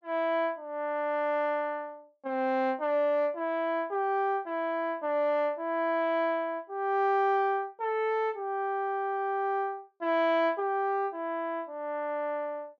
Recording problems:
treble missing; nothing above 8 kHz

